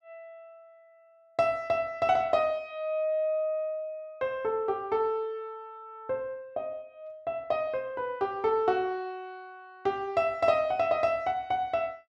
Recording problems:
none

